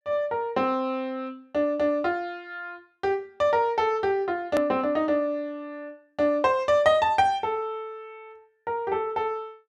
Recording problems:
hard cut with a click; at 4.5 s

